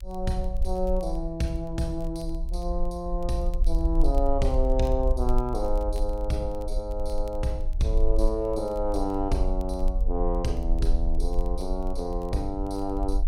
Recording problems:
rumble; below 44 Hz, SNR 1 dB
crackling; vinyl, SNR 29 dB

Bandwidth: 16.5 kHz